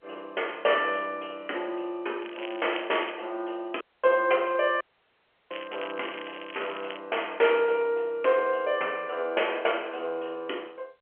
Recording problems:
telephone audio; 370 Hz to 3.2 kHz, G.711
crackling; at 2 s and from 5.5 to 7 s; loose cable, SNR 14 dB
audio cutting out; at 4 s and at 5 s for 0.5 s

